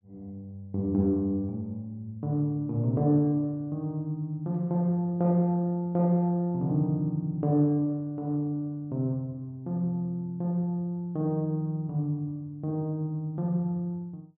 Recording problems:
none

